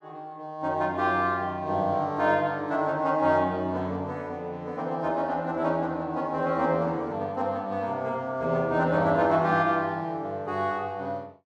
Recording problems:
none

